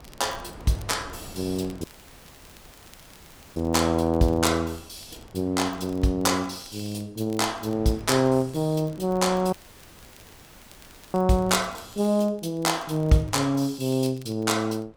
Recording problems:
wind on the microphone; below 640 Hz, SNR 22 dB
crackle; vinyl, SNR 29 dB
audio cutting out; at 2 s for 1.5 s and at 9.5 s for 1.5 s

